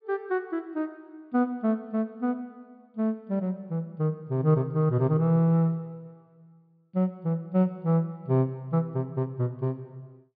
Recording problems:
treble missing; nothing above 4.9 kHz

